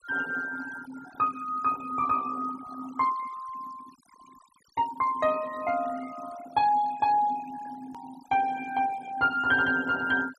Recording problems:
noise reduction artefacts; signal-to-artefact ratio 18 dB
edit click; at 8 s

